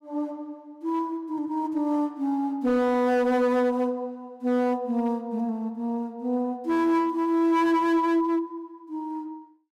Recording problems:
distortion; hard clipping, uneven, signal-to-distortion ratio 11 dB

